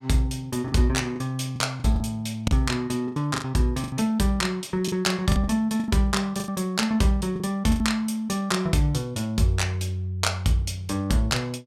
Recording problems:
packet loss; 8% of the sound replaced, filled with the last packet

